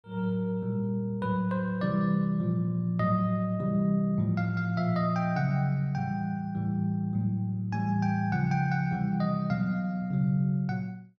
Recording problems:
none

